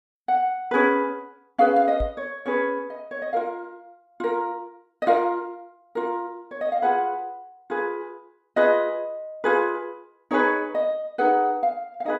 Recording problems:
knock on the microphone; at 2 s; peak -3 dB vs average level

